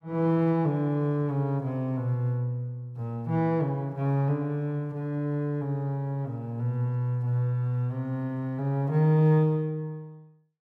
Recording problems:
none

